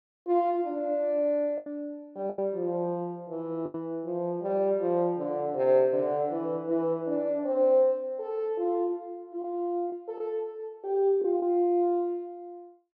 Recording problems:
lost packets; 3% of the sound replaced, filled with the last packet

